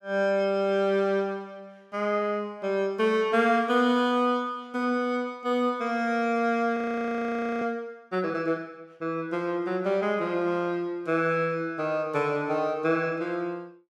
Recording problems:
frozen audio; at 7 s for 1 s

